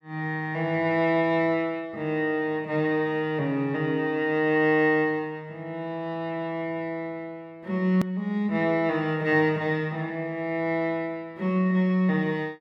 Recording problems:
hard cut with a click; at 8 s

